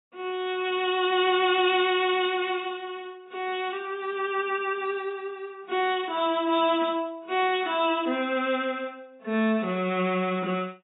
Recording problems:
lossy compression; AAC, log-spectral distance 3 dB, nothing above 3.4 kHz

